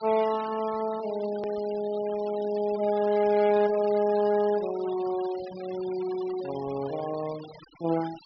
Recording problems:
low-pass filter; nothing above 5.5 kHz
denoising artefacts; signal-to-artefact ratio 17 dB
hard cut with a click; at 1.5 s

